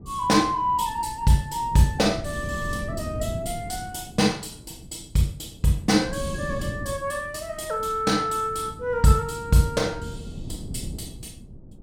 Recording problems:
wind noise; below 210 Hz, SNR 13 dB

